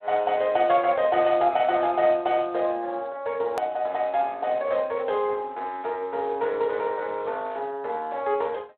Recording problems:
telephone audio; 300 Hz to 3.8 kHz, Speex
edit click; at 3.5 s

